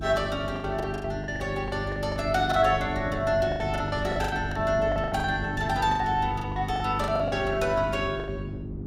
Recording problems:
electrical hum; 50 Hz, harmonics up to 400 Hz, SNR 8 dB
wind on the microphone; below 240 Hz, SNR 13 dB
packet loss; 15% of the sound replaced, filled with the last packet

